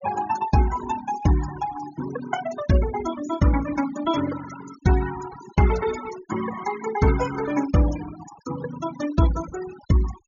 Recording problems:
low-pass filter; nothing above 6.8 kHz
noise reduction artefacts; signal-to-artefact ratio 11 dB

